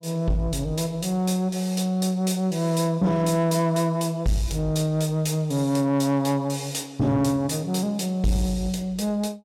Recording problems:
distorted audio; soft clipping, signal-to-distortion ratio 12 dB

